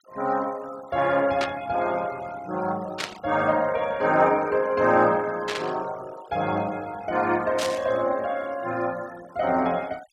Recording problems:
denoising artefacts; signal-to-artefact ratio 21 dB
burst of static; 4 times, first at 1.5 s; peak 0 dB vs average level

